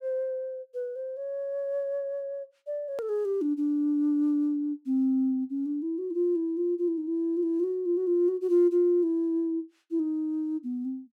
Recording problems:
click at an edit; at 3 s

